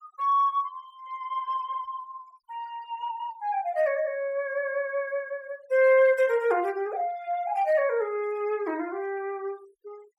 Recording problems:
noise reduction artefacts; signal-to-artefact ratio 26 dB

